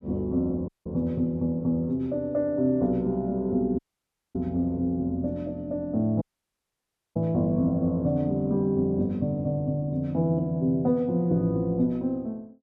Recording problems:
audio cutting out; at 0.5 s, at 4 s for 0.5 s and at 6 s for 1 s

